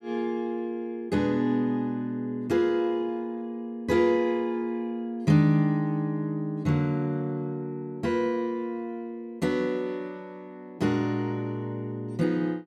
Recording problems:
none

